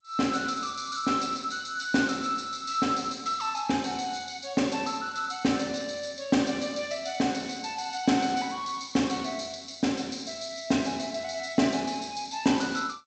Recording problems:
lossy compression; G.722, log-spectral distance 6 dB

